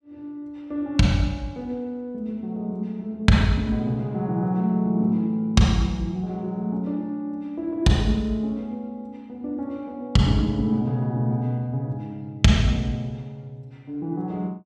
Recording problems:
none

